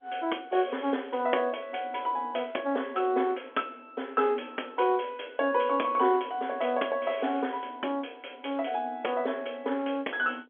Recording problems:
telephone audio; 220 Hz to 3.4 kHz, G.711

